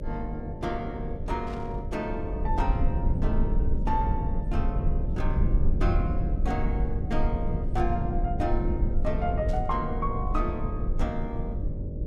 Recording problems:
mains hum; 50 Hz, harmonics up to 600 Hz, SNR 7 dB
rumble; below 76 Hz, SNR -3 dB
static burst; at 1.5 s and at 9.5 s; peak -12 dB vs average level

